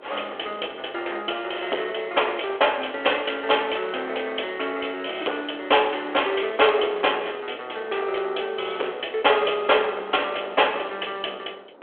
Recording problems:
telephone audio; 340 Hz to 3.4 kHz, G.726
distortion; hard clipping, uneven, signal-to-distortion ratio 13 dB
wind noise; below 920 Hz, SNR 21 dB

